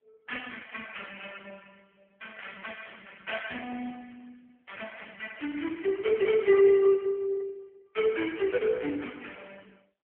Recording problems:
telephone audio; 260 Hz to 3.2 kHz, AMR-NB

